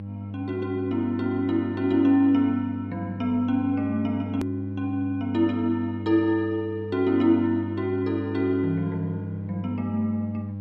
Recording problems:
hum; 50 Hz, harmonics up to 600 Hz, SNR 9 dB
click at an edit; at 4.5 s

